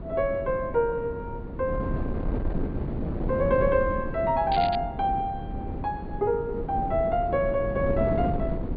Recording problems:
low-pass filter; nothing above 4.7 kHz
wind on the microphone; below 290 Hz, SNR 5 dB
crackling; at 4.5 s; loose cable, SNR 13 dB

